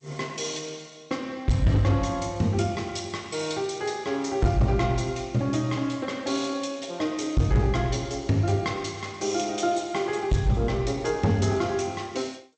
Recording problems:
codec artefacts; G.722, log-spectral distance 6 dB, nothing above 8 kHz
distortion; hard clipping, signal-to-distortion ratio 12 dB

